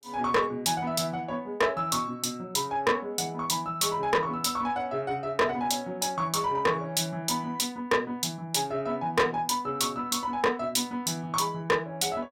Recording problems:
distorted audio; soft clipping, signal-to-distortion ratio 7 dB

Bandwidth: 16.5 kHz